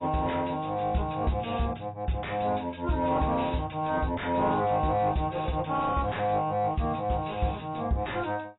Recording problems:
codec artefacts; AAC, log-spectral distance 4 dB, nothing above 3.9 kHz
distorted audio; soft clipping, signal-to-distortion ratio 11 dB

